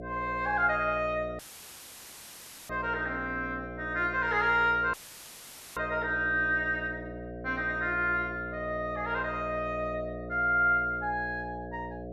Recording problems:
electrical hum; 60 Hz, harmonics up to 720 Hz, SNR 11 dB
dropout; at 1.5 s for 1.5 s and at 5 s for 1 s; filled with static

